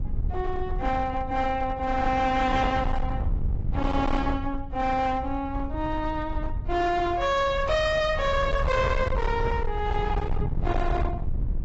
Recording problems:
lossy compression; AAC, log-spectral distance 2 dB, nothing above 7.6 kHz
distortion; hard clipping, uneven, signal-to-distortion ratio 8 dB
rumble; below 110 Hz, SNR 5 dB

